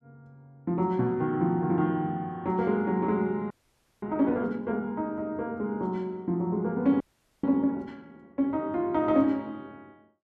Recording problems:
frozen audio; at 3.5 s for 0.5 s and at 7 s

